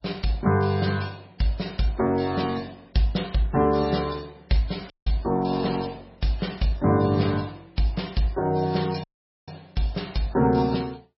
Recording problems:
lossy compression; MP3, log-spectral distance 6 dB, nothing above 5.5 kHz
dropout; at 5 s and at 9 s

